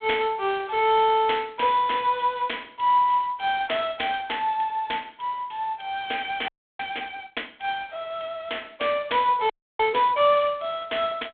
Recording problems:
phone line; 300 Hz to 3.5 kHz, G.726
audio freezing; at 6.5 s and at 9.5 s

